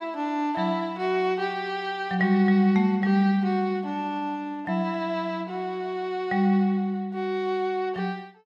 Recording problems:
none

